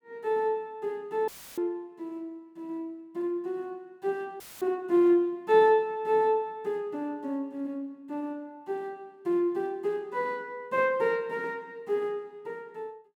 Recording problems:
dropout; at 1.5 s and at 4.5 s; filled with static

